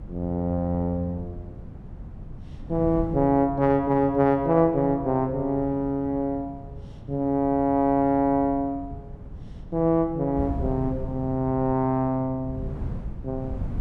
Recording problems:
wind noise; below 160 Hz, SNR 14 dB

